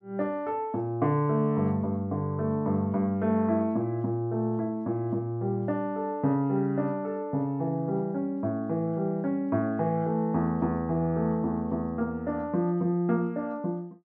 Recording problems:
none

